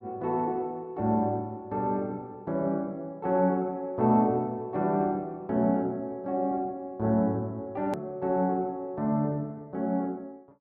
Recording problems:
edit click; at 8 s

